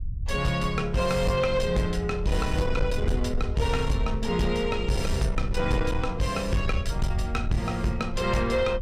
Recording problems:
distorted audio; soft clipping, signal-to-distortion ratio 12 dB
low-frequency rumble; below 80 Hz, SNR 6 dB

